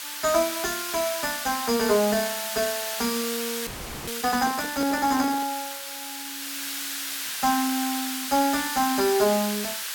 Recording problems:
hiss; SNR 5 dB
audio freezing; at 3.5 s
microphone handling noise; from 4.5 to 5.5 s; peak -6 dB vs average level

